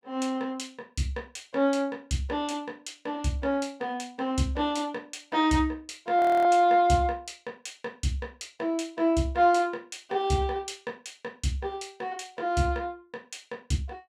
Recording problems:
frozen audio; at 6 s

